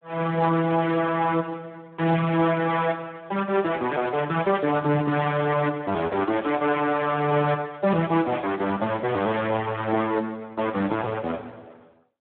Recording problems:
telephone audio; 190 Hz to 3.5 kHz, Speex

